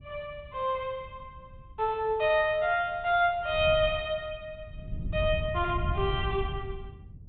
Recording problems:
treble missing; nothing above 4 kHz
wind noise; below 120 Hz, SNR 8 dB

